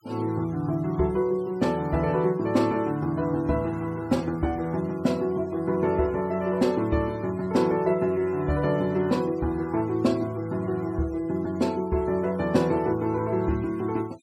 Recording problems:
denoising artefacts; signal-to-artefact ratio 26 dB

